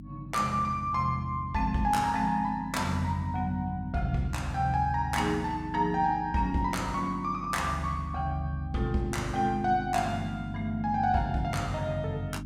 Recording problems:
hum; 50 Hz, harmonics up to 300 Hz, SNR 12 dB

